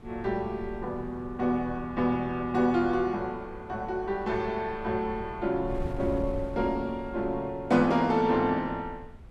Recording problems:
wind on the microphone; below 110 Hz, SNR 15 dB

